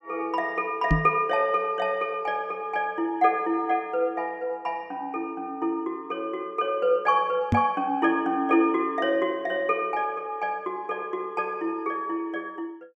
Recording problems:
microphone bump; at 1 s and at 7.5 s; peak +7 dB vs average level

